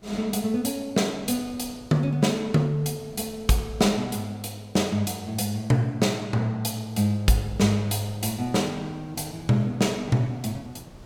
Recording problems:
wind on the microphone; below 420 Hz, SNR 24 dB

